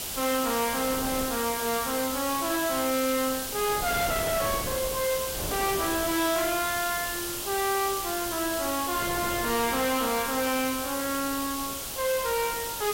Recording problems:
distortion; soft clipping, signal-to-distortion ratio 8 dB
background hiss; slope +1 dB per octave, SNR 3 dB
wind on the microphone; below 730 Hz, SNR 12 dB

